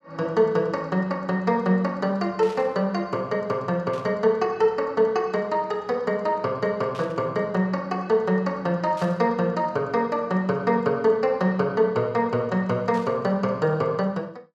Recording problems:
burst of static; 5 times, first at 2.5 s; peak -14 dB vs average level

